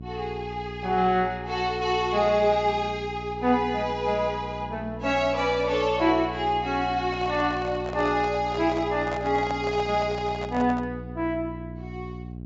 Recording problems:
treble cut off; nothing above 8 kHz
hum; 60 Hz, harmonics up to 660 Hz, SNR 13 dB
microphone handling noise; from 7 to 11 s; peak -5 dB vs average level

